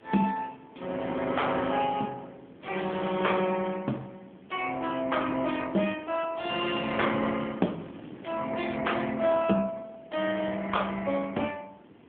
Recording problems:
phone line; 150 Hz to 3.4 kHz, AMR-NB
wind noise; below 520 Hz, SNR 21 dB

